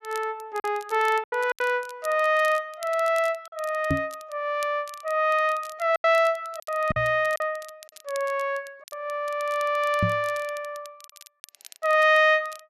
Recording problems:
crackling; vinyl, SNR 23 dB
packet loss; 5% of the sound replaced, filled with silence
microphone bump; at 4 s, at 7 s and at 10 s; peak +3 dB vs average level

